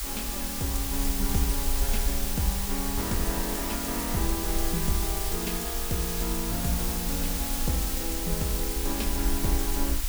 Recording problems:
hiss; slope +2 dB per octave, SNR -2 dB
low-frequency rumble; below 52 Hz, SNR 3 dB

